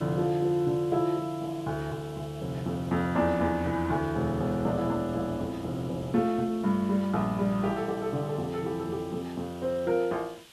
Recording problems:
hiss; SNR 22 dB

